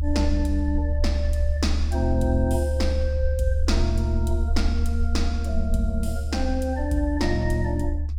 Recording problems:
low-frequency rumble; below 74 Hz, strongest tone 72 Hz, SNR -2 dB

